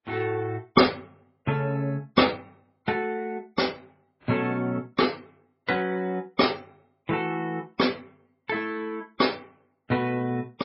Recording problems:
lossy compression; MP3, then AAC, log-spectral distance 3 dB, nothing above 5.5 kHz

